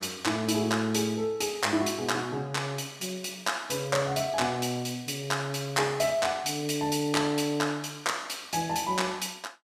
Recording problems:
none

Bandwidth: 15.5 kHz